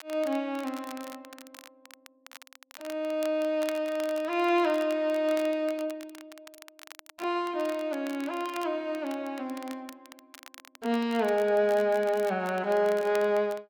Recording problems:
crackle; vinyl, SNR 20 dB

